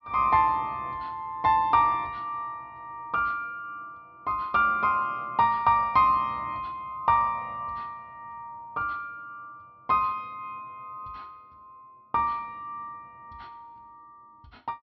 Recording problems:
treble cut off; nothing above 5.5 kHz

